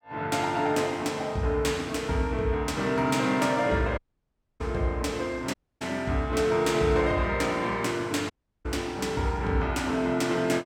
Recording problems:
audio cutting out; at 4 s for 0.5 s, at 5.5 s and at 8.5 s

